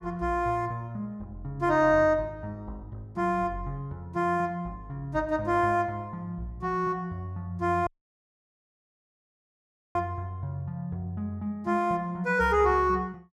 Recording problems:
dropout; at 8 s for 2 s

